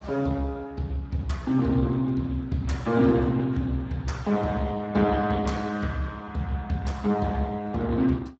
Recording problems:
lossy compression; Speex, log-spectral distance 3 dB, nothing above 7.6 kHz

